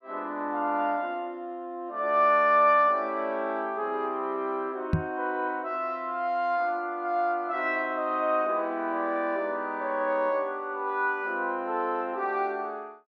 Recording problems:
microphone bump; at 5 s; peak +7 dB vs average level

